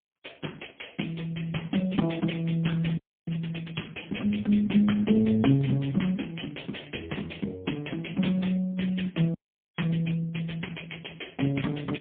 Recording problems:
phone line; 110 Hz to 3.4 kHz, AMR-NB, then MP3
frozen audio; at 3 s and at 9.5 s

